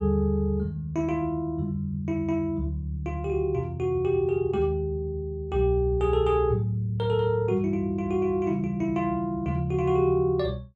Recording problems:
none

